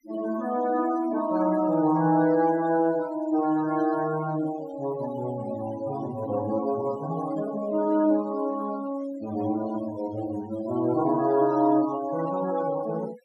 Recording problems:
noise reduction artefacts; signal-to-artefact ratio 17 dB

